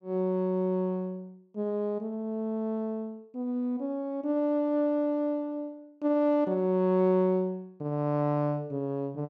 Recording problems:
none

